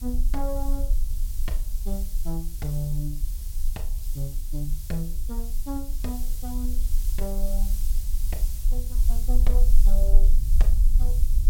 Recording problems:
hiss; SNR 6 dB
rumble; below 40 Hz, strongest tone 24 Hz, SNR -9 dB

